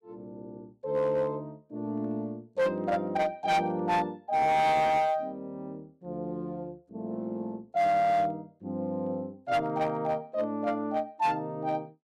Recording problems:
distortion; hard clipping, uneven, signal-to-distortion ratio 11 dB

